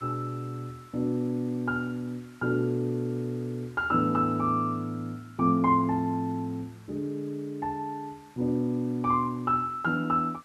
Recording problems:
hiss; SNR 28 dB

